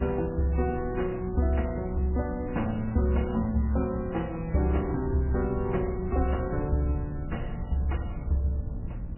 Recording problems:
codec artefacts; MP3, log-spectral distance 3 dB, nothing above 2.6 kHz
hum; 60 Hz, harmonics up to 900 Hz, SNR 15 dB
rumble; below 94 Hz, SNR 13 dB
wind on the microphone; below 130 Hz, SNR 12 dB

